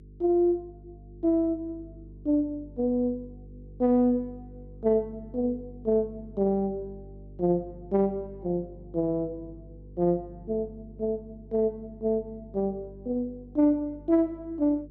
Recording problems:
hum; 50 Hz, harmonics up to 450 Hz, SNR 20 dB

